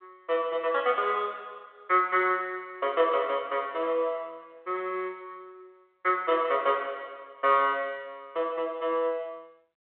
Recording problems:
phone line; 260 Hz to 3.6 kHz, G.726

